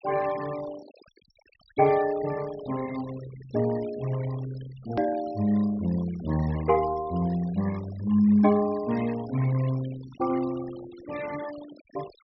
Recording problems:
low-pass filter; nothing above 5.7 kHz
noise reduction artefacts; signal-to-artefact ratio 19 dB
hard cut with a click; at 5 s

